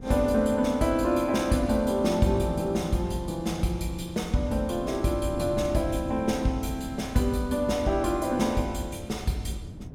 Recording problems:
wind noise; below 230 Hz, SNR 14 dB

